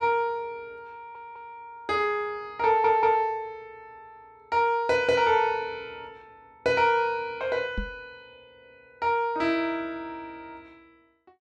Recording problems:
audio stuttering; at 1 s and at 2.5 s
microphone thump; at 8 s; peak -3 dB vs average level

